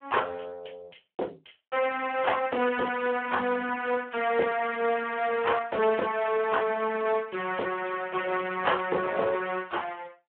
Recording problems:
phone line; 320 Hz to 3.2 kHz, Speex

